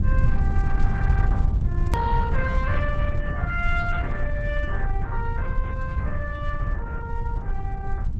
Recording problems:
lossy compression; Opus, log-spectral distance 2 dB, nothing above 13.1 kHz
low-frequency rumble; below 92 Hz, SNR -5 dB
edit click; at 2 s

